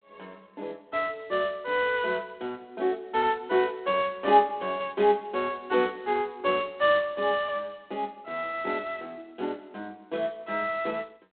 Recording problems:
phone line; 260 Hz to 3.9 kHz, G.726

